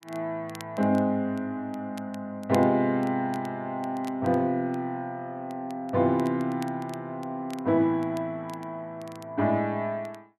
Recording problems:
crackle; vinyl, SNR 24 dB

